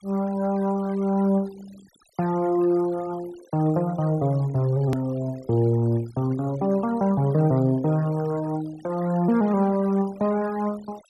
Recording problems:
denoising artefacts; signal-to-artefact ratio 22 dB
hard cut with a click; at 5 s

